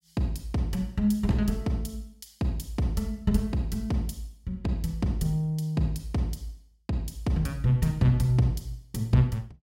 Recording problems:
none

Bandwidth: 16 kHz